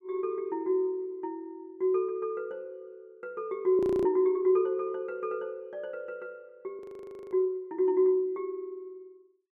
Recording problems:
frozen audio; at 4 s and at 7 s for 0.5 s

